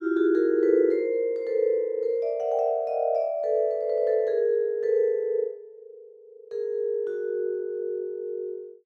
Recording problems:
none

